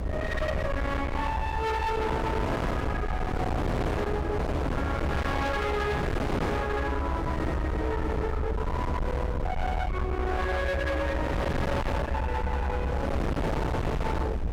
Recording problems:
distorted audio; hard clipping, signal-to-distortion ratio 6 dB
rumble; below 170 Hz, SNR 1 dB
wind on the microphone; below 650 Hz, SNR 0 dB

